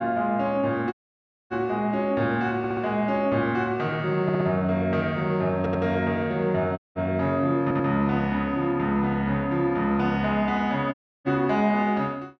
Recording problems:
dropout; at 1 s for 0.5 s, at 7 s and at 11 s
audio stuttering; 4 times, first at 2.5 s

